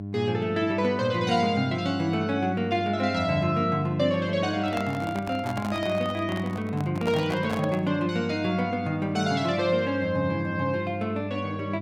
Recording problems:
hum; 50 Hz, harmonics up to 700 Hz, SNR 9 dB
microphone handling noise; from 4.5 to 8 s; peak -3 dB vs average level

